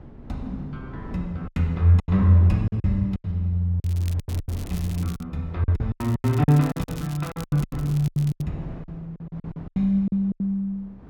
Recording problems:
wind noise; below 290 Hz, SNR 17 dB
lost packets; 16% of the sound replaced, filled with silence
crackling; from 4 to 5 s and from 6 to 8.5 s; loose cable, SNR 21 dB

